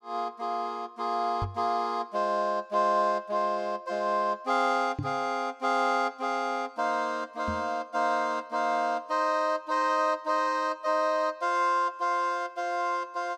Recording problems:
microphone bump; at 1.5 s, at 5 s and at 7.5 s; peak -2 dB vs average level

